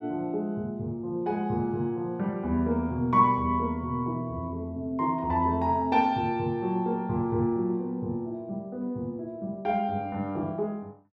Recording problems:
none

